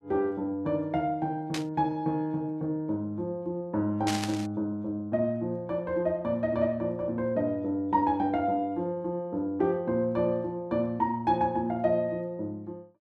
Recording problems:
static burst; at 1.5 s and at 4 s; peak +1 dB vs average level

